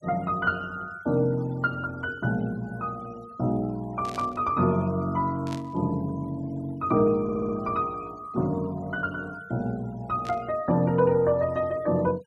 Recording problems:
denoising artefacts; signal-to-artefact ratio 25 dB
burst of static; at 4 s, at 5.5 s and at 10 s; peak -10 dB vs average level
stutter; at 7 s

